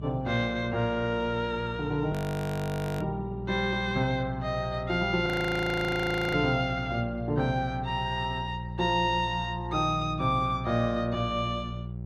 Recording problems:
codec artefacts; Opus, log-spectral distance 2 dB, nothing above 14.6 kHz
hum; 60 Hz, harmonics up to 600 Hz, SNR 9 dB
audio freezing; at 2 s for 1 s and at 5.5 s for 1 s

